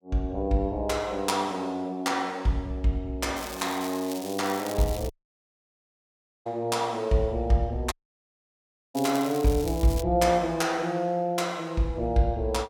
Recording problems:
crackle; from 3.5 to 5 s and from 9 to 10 s; loose cable, SNR 13 dB
audio cutting out; at 5 s for 1.5 s and at 8 s for 1 s

